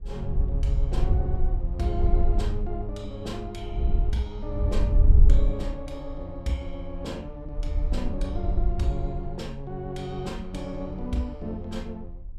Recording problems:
wind noise; below 60 Hz, SNR -6 dB

